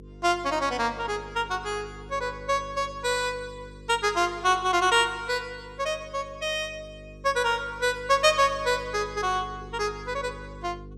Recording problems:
hum; 50 Hz, harmonics up to 500 Hz, SNR 19 dB

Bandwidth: 14.5 kHz